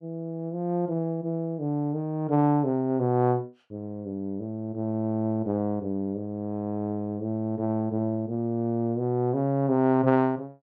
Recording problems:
none

